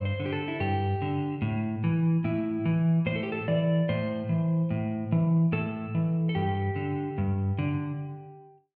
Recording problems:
none

